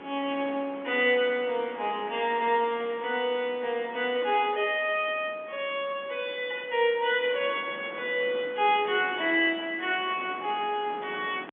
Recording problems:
telephone audio; 240 Hz to 3.5 kHz, G.711
wind on the microphone; below 1.4 kHz, SNR 18 dB

